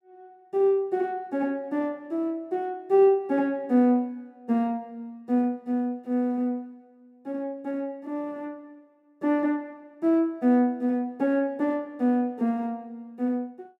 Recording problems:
none

